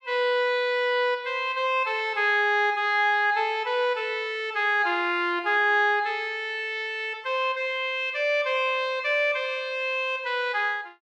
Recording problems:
none

